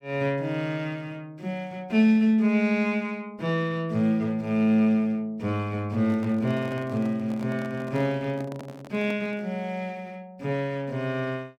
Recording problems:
microphone handling noise; from 6 to 9.5 s; peak -9 dB vs average level

